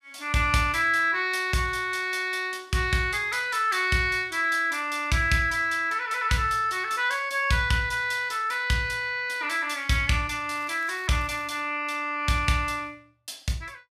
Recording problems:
crackle; from 11 to 12 s; loose cable, SNR 27 dB

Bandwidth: 15 kHz